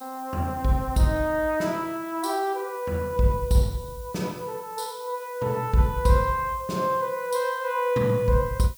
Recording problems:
background hiss; SNR 21 dB

